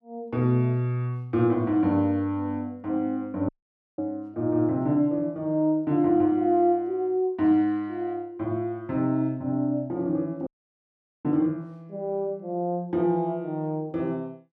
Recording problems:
audio cutting out; at 3.5 s and at 10 s for 1 s

